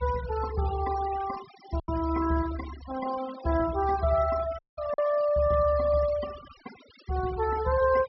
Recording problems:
low-pass filter; nothing above 5.6 kHz
denoising artefacts; signal-to-artefact ratio 16 dB
lost packets; 1.6% of the sound replaced, filled with silence
dropout; at 4.5 s

